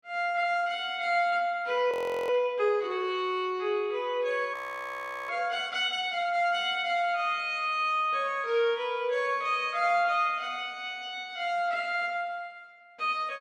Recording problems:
audio freezing; at 2 s and at 4.5 s for 0.5 s

